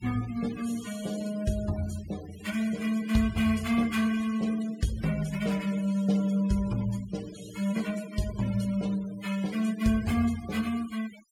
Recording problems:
noise reduction artefacts; signal-to-artefact ratio 16 dB

